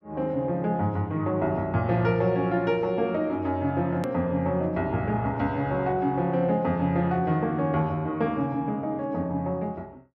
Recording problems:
edit click; at 4 s

